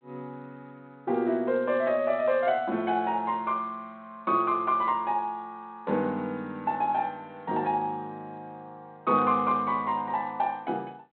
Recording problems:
phone line; 220 Hz to 3.7 kHz, G.726

